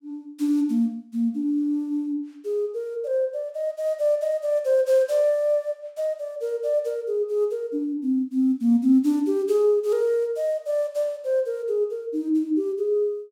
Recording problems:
none

